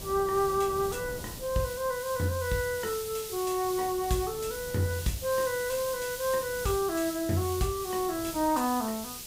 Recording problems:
background hiss; slope +5 dB per octave, SNR 9 dB
wind on the microphone; below 400 Hz, SNR 18 dB

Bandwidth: 15.5 kHz